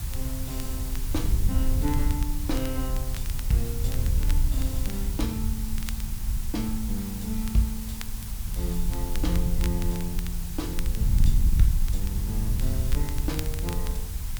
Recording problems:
background hiss; SNR 6 dB
rumble; below 88 Hz, SNR 14 dB
wind on the microphone; below 70 Hz, SNR -3 dB
crackle; vinyl, SNR 13 dB

